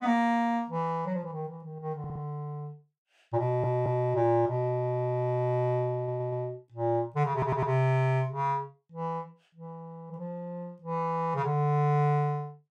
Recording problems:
audio stuttering; 4 times, first at 2 s

